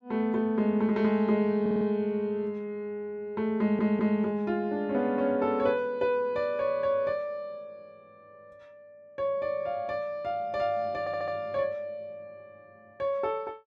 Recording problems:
audio stuttering; at 1.5 s, at 3.5 s and at 11 s

